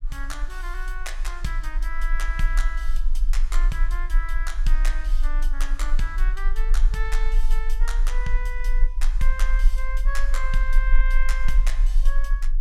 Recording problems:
low-frequency rumble; below 34 Hz, strongest tone 20 Hz, SNR -8 dB

